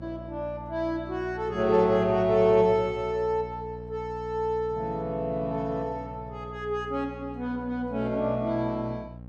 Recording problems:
hum; 60 Hz, harmonics up to 840 Hz, SNR 15 dB

